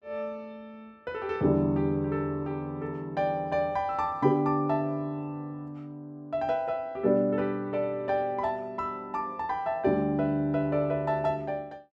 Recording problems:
none

